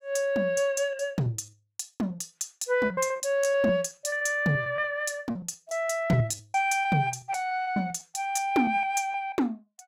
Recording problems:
lost packets; 12% of the sound replaced, filled with repeated pitch periods

